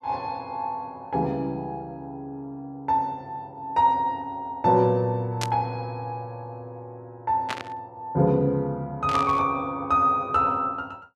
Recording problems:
burst of static; at 5.5 s, at 7.5 s and at 9 s; peak 0 dB vs average level

